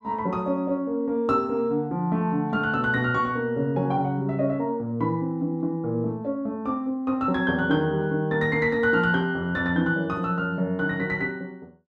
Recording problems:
none

